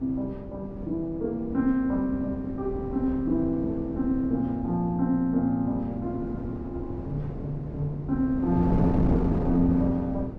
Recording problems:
wind noise; below 320 Hz, SNR 6 dB

